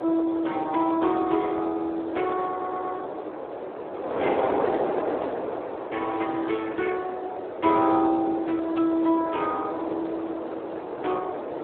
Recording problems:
telephone audio; 280 Hz to 2.6 kHz, Speex
wind on the microphone; below 800 Hz, SNR 5 dB
audio stuttering; at 2.5 s

